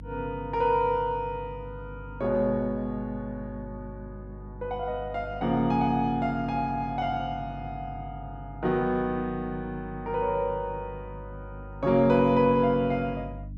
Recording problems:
electrical hum; 50 Hz, harmonics up to 300 Hz, SNR 15 dB

